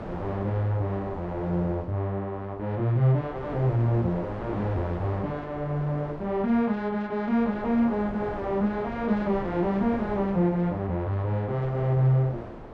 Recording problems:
wind on the microphone; below 750 Hz, SNR 13 dB

